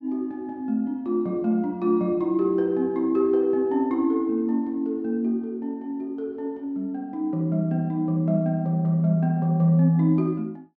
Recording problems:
none

